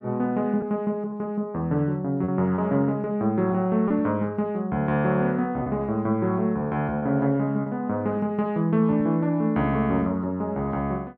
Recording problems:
packet loss; 3% of the sound replaced, filled with repeated pitch periods

